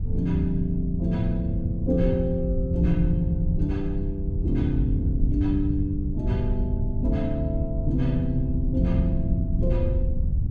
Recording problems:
wind noise; below 98 Hz, SNR 0 dB

